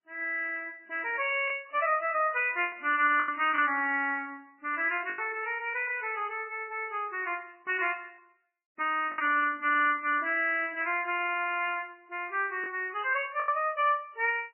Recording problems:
lossy compression; MP3, then MP3, log-spectral distance 3 dB, nothing above 2.4 kHz
packet loss; 3% of the sound replaced, filled with the last packet

